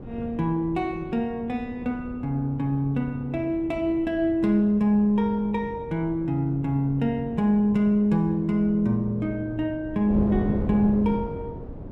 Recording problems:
wind noise; below 350 Hz, SNR 12 dB

